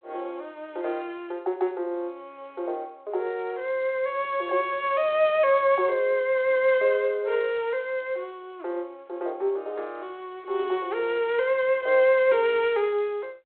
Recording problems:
phone line; 320 Hz to 3.7 kHz, G.726

